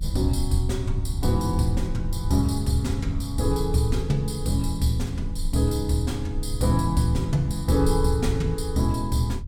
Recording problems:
low-frequency rumble; below 78 Hz, strongest tone 26 Hz, SNR 6 dB

